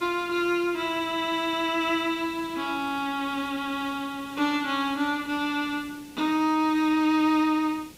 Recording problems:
background hiss; SNR 21 dB

